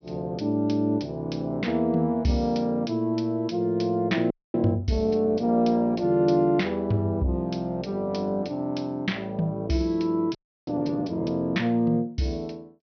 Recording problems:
low-pass filter; nothing above 5.9 kHz
frozen audio; at 4.5 s and at 10 s

